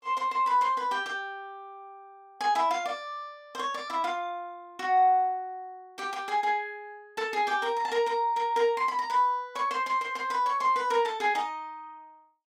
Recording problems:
none

